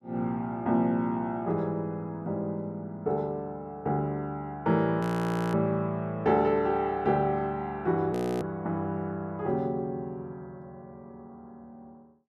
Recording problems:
audio freezing; at 5 s for 0.5 s and at 8 s

